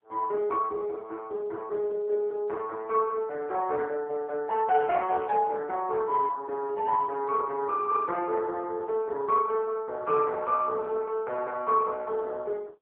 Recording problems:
telephone audio; 320 Hz to 2.1 kHz, AMR-NB

